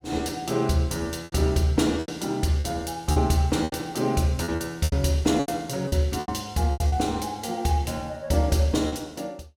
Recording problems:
packet loss; 9% of the sound replaced, filled with repeated pitch periods

